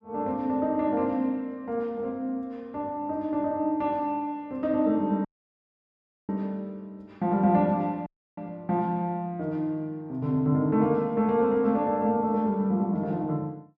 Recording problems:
dropout; at 5.5 s for 1 s and at 8 s

